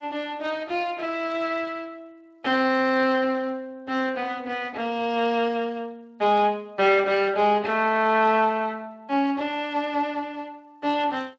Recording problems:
lossy codec; G.722, then Speex, log-spectral distance 3 dB

